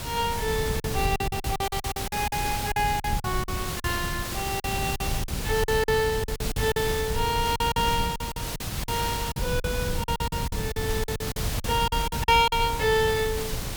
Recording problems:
hiss; slope -2 dB per octave, SNR 6 dB
wind on the microphone; below 150 Hz, SNR 6 dB
packet loss; 13% of the sound replaced, filled with silence

